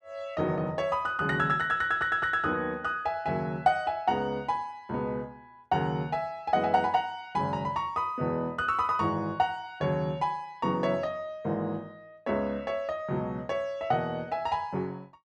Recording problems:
stutter; at 2 s

